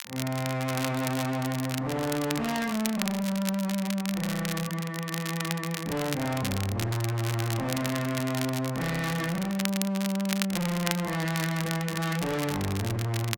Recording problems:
distorted audio; hard clipping, uneven, signal-to-distortion ratio 6 dB
crackling; vinyl, SNR 7 dB

